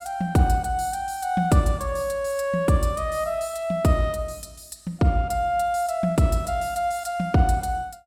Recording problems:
none

